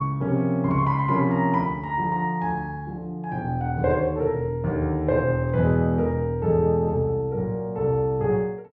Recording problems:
none

